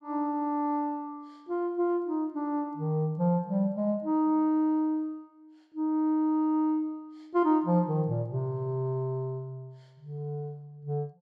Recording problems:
none

